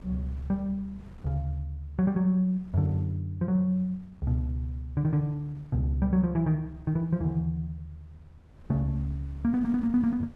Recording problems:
wind noise; below 220 Hz, SNR 24 dB

